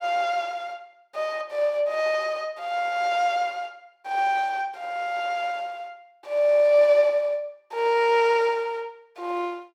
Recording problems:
none

